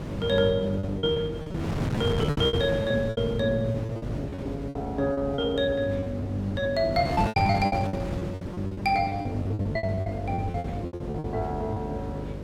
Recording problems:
electrical hum; 50 Hz, harmonics up to 600 Hz, SNR 10 dB
wind noise; below 440 Hz, SNR 7 dB
packet loss; 19% of the sound replaced, filled with repeated pitch periods

